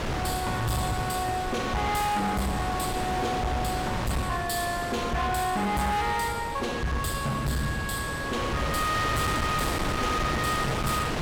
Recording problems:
distorted audio; hard clipping, uneven, signal-to-distortion ratio 7 dB
wind noise; below 1.7 kHz, SNR 4 dB

